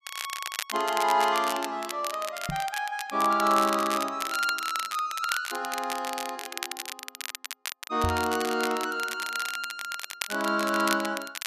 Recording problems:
crackle; vinyl, SNR 7 dB
microphone thump; at 2.5 s and at 8 s; peak +1 dB vs average level

